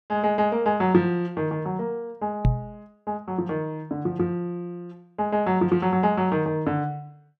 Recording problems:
knock on the microphone; at 2.5 s; peak +7 dB vs average level

